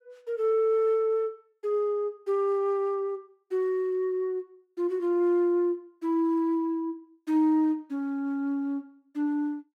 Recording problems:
none

